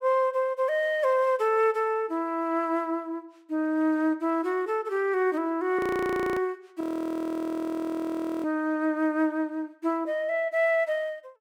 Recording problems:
audio freezing; at 6 s for 0.5 s and at 7 s for 1.5 s

